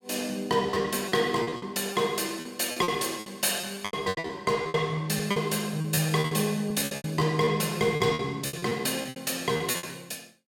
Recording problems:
packet loss; 16% of the sound replaced, filled with repeated pitch periods

